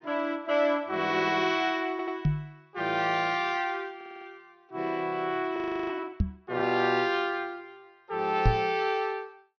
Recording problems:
treble cut off; nothing above 6.2 kHz
audio stuttering; at 2 s and at 4 s
microphone bump; at 2.5 s, at 6 s and at 8.5 s; peak +8 dB vs average level
audio freezing; at 5.5 s

